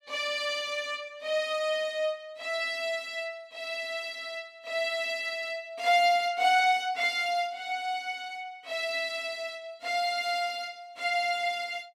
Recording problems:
none

